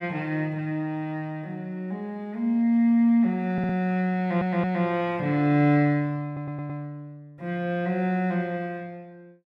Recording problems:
audio stuttering; at 3.5 s, at 4 s and at 6.5 s

